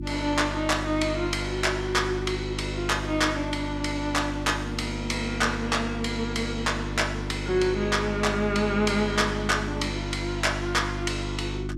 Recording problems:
hum; 50 Hz, harmonics up to 350 Hz, SNR 7 dB

